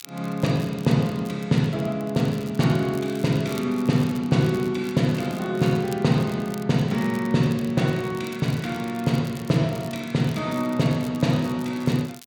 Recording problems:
crackling; vinyl, SNR 22 dB

